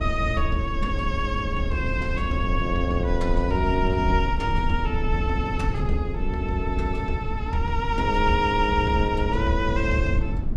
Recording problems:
low-frequency rumble; below 94 Hz, SNR 3 dB

